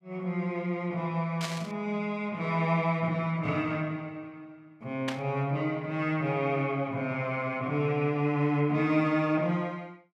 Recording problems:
static burst; at 1.5 s and at 5 s; peak -1 dB vs average level

